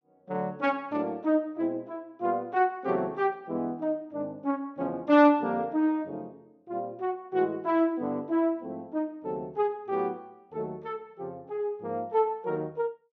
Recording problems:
none

